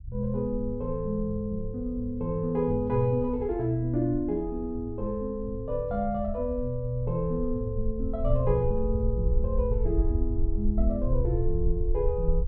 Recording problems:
rumble; below 60 Hz, SNR 5 dB

